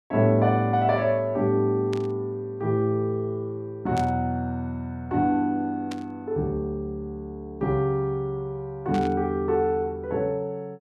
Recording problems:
static burst; 4 times, first at 2 s; peak -8 dB vs average level

